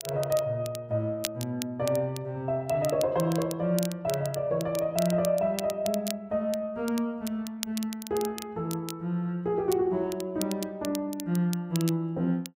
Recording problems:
crackle; vinyl, SNR 12 dB

